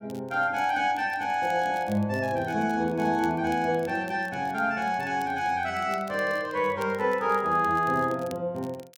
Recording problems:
crackle; vinyl, SNR 26 dB

